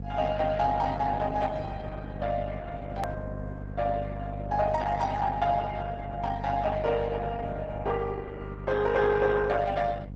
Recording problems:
codec artefacts; Opus, log-spectral distance 4 dB, nothing above 13.1 kHz
mains hum; 50 Hz, harmonics up to 550 Hz, SNR 9 dB
edit click; at 3 s

